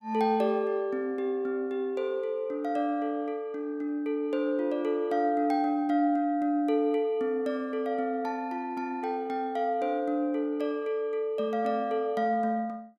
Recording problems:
none

